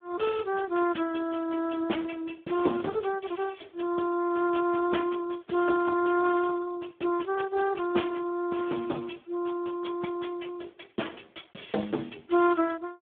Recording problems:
telephone audio; 220 Hz to 3.3 kHz, Speex

